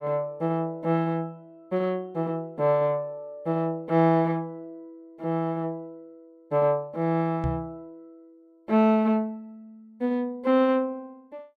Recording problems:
knock on the microphone; at 7.5 s; peak +1 dB vs average level

